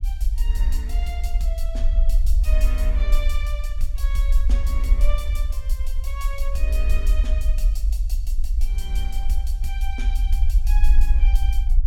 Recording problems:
low-frequency rumble; below 50 Hz, SNR -12 dB

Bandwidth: 17 kHz